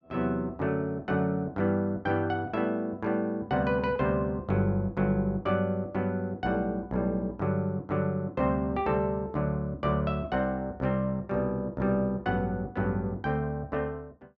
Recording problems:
none

